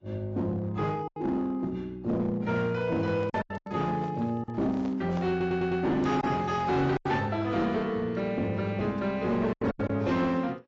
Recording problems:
lossy compression; AAC, log-spectral distance 2 dB, nothing above 7.3 kHz
distorted audio; hard clipping, uneven, signal-to-distortion ratio 10 dB
packet loss; 6% of the sound replaced, filled with silence
handling noise; from 3 to 6 s; peak -6 dB vs average level
stutter; at 5.5 s

